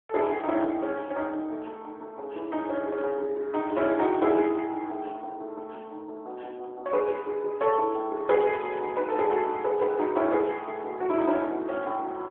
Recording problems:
telephone audio; 280 Hz to 3.4 kHz, AMR-NB

